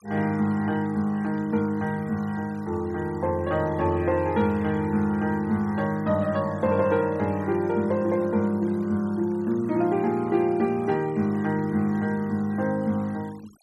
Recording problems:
denoising artefacts; signal-to-artefact ratio 25 dB

